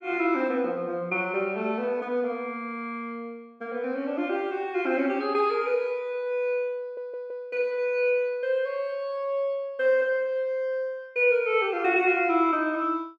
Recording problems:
stutter; at 7 s

